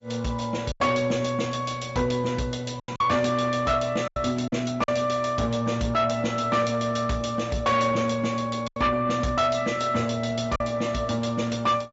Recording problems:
treble cut off; nothing above 7.6 kHz
codec artefacts; Opus, log-spectral distance 4 dB
distortion; soft clipping, signal-to-distortion ratio 11 dB
lost packets; 4% of the sound replaced, filled with silence

